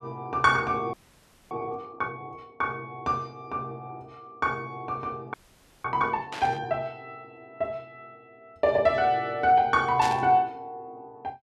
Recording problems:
frozen audio; at 1 s for 0.5 s and at 5.5 s for 0.5 s
burst of static; at 6.5 s and at 10 s; peak -3 dB vs average level

